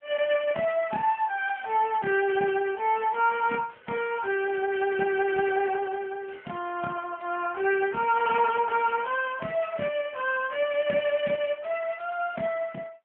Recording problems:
telephone audio; 190 Hz to 3.2 kHz, AMR-NB

